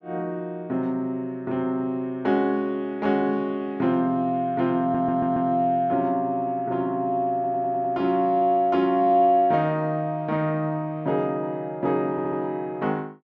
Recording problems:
low-pass filter; nothing above 8 kHz
audio stuttering; at 5 s, at 7.5 s and at 12 s

